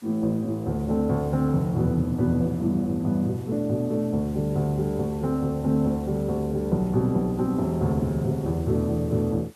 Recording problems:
background hiss; SNR 27 dB

